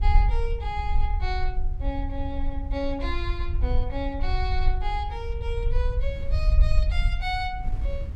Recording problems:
low-frequency rumble; below 56 Hz, SNR -4 dB
wind on the microphone; below 170 Hz, SNR 16 dB

